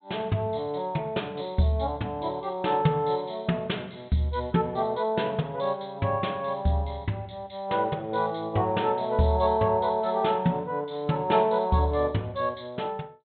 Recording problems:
treble missing; nothing above 4 kHz

